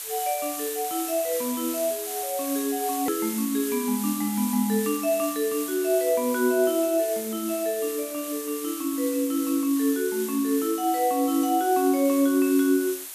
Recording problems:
hiss; slope +2 dB per octave, SNR 8 dB
hard cut with a click; at 3 s

